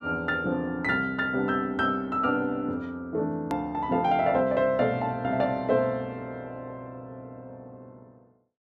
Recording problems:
edit click; at 3.5 s

